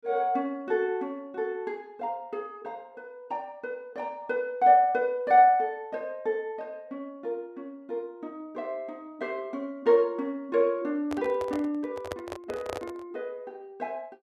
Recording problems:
microphone handling noise; from 11 to 13 s; peak -3 dB vs average level

